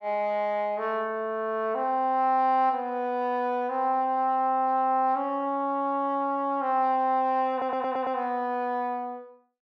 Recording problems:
stutter; at 7.5 s

